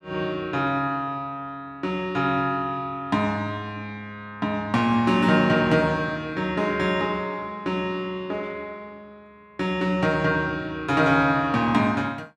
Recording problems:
none

